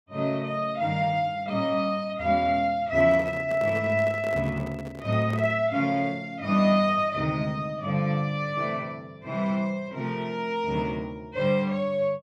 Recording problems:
microphone handling noise; from 3 to 5.5 s; peak -8 dB vs average level

